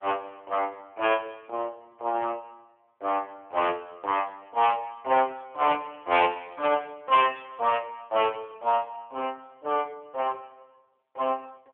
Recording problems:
phone line; 240 Hz to 3.3 kHz, AMR-NB

